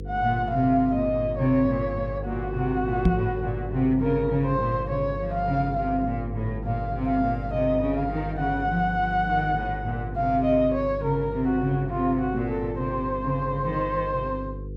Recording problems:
hum; 50 Hz, harmonics up to 500 Hz, SNR 9 dB
microphone thump; at 3 s; peak +8 dB vs average level

